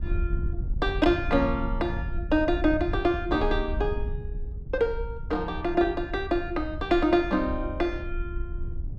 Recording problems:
wind noise; below 72 Hz, SNR 8 dB

